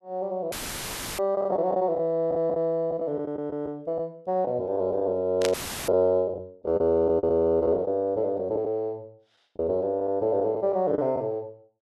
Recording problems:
packet loss; 7% of the sound replaced, filled with the last packet
dropout; at 0.5 s for 0.5 s and at 5.5 s; filled with static
burst of static; at 5.5 s; peak +1 dB vs average level

